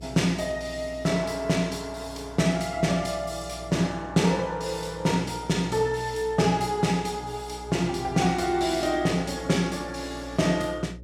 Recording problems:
hum; 60 Hz, harmonics up to 600 Hz, SNR 18 dB

